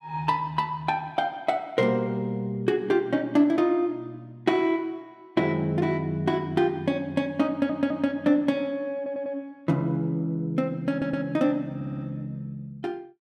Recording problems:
audio stuttering; 4 times, first at 7.5 s

